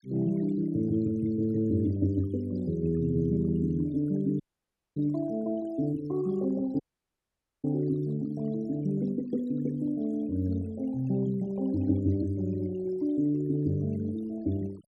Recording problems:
denoising artefacts; signal-to-artefact ratio 24 dB
dropout; at 4.5 s for 0.5 s and at 7 s for 1 s

